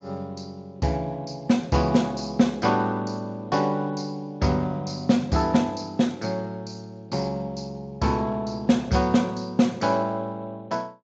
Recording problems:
lossy codec; Speex, log-spectral distance 4 dB

